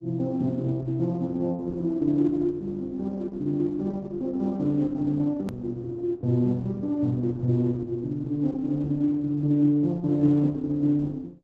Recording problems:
lossy compression; Opus, log-spectral distance 2 dB, nothing above 13.1 kHz
edit click; at 5.5 s

